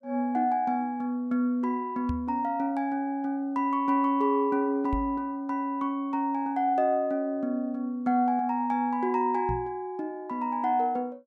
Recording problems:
microphone bump; at 2 s, at 5 s and at 9.5 s; peak -2 dB vs average level

